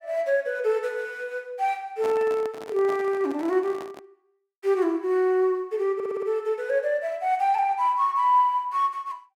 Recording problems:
handling noise; from 2 to 4 s; peak -7 dB vs average level
stutter; at 6 s

